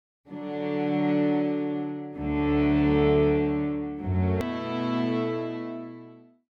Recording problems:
edit click; at 4.5 s

